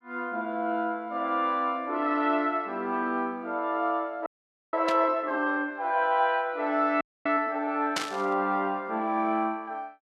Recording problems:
audio freezing; at 4.5 s and at 7 s
static burst; at 5 s and at 8 s; peak +3 dB vs average level

